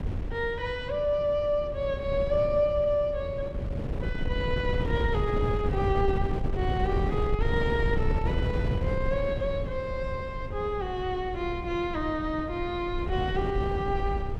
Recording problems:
wind on the microphone; below 160 Hz, SNR 3 dB

